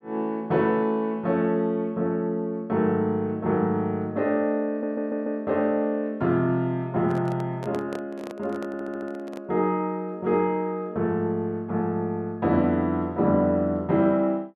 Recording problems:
audio stuttering; at 4.5 s and at 8.5 s
microphone handling noise; from 7 to 9.5 s; peak -7 dB vs average level

